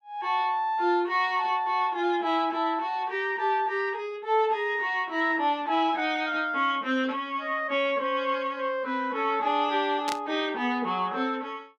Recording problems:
burst of static; at 10 s; peak -2 dB vs average level

